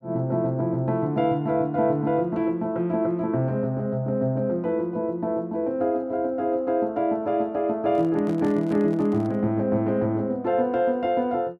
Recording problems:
handling noise; from 8 to 9.5 s; peak -12 dB vs average level

